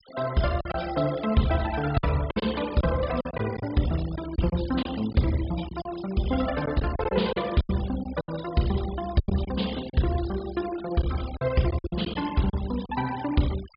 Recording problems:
treble cut off; nothing above 5 kHz
noise reduction artefacts; signal-to-artefact ratio 16 dB
packet loss; 8% of the sound replaced, filled with silence

